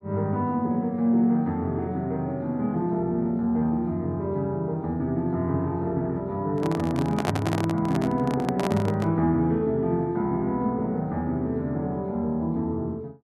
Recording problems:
handling noise; from 6.5 to 9 s; peak +3 dB vs average level

